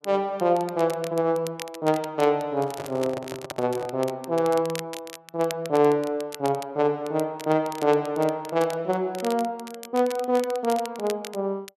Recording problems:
crackling; vinyl, SNR 17 dB
handling noise; from 2.5 to 4 s; peak -6 dB vs average level

